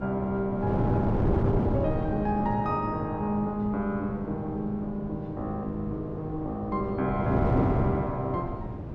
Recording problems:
wind on the microphone; below 350 Hz, SNR 2 dB

